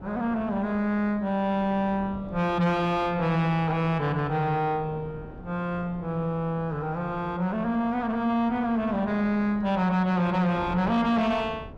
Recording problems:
distortion; soft clipping, signal-to-distortion ratio 10 dB
wind noise; below 460 Hz, SNR 17 dB

